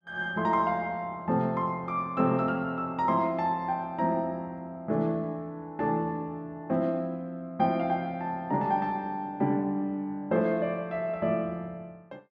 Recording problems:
none

